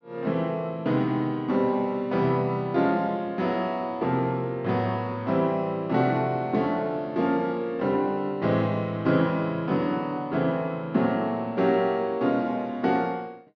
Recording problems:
treble cut off; nothing above 6.6 kHz

